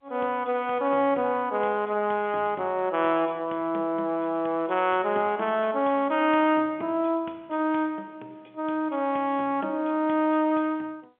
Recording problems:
phone line; 220 Hz to 3.5 kHz, G.711

